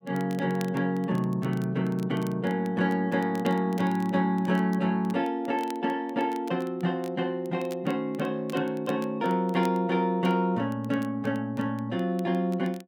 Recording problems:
crackling; vinyl, SNR 24 dB

